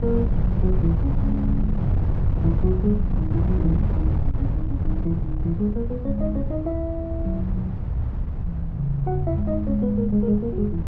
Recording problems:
wind noise; below 120 Hz, SNR -1 dB

